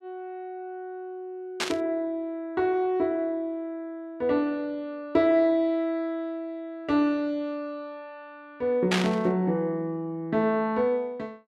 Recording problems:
static burst; at 1.5 s and at 9 s; peak +5 dB vs average level

